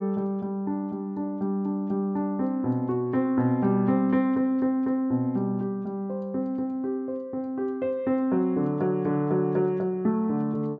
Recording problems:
low-pass filter; nothing above 8 kHz

